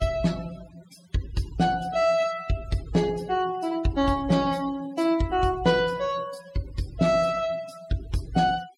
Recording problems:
denoising artefacts; signal-to-artefact ratio 20 dB

